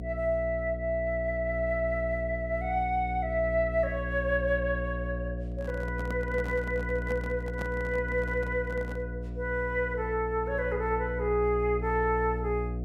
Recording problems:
hum; 60 Hz, harmonics up to 720 Hz, SNR 6 dB
microphone handling noise; from 5.5 to 9 s; peak -5 dB vs average level

